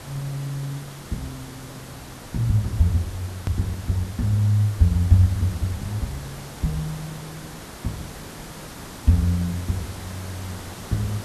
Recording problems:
background hiss; slope -4 dB per octave, SNR 14 dB
click at an edit; at 3.5 s

